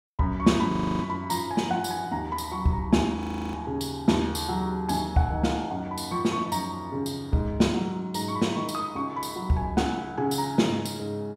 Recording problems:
audio freezing; at 0.5 s and at 3 s

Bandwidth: 16 kHz